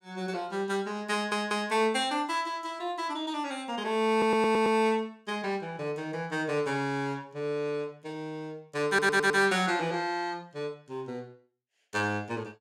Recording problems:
stutter; at 1 s, at 4 s and at 9 s

